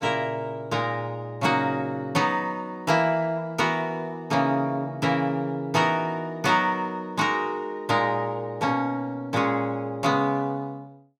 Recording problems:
none

